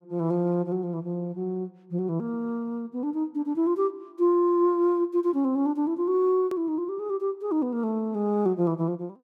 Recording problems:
edit click; at 6.5 s

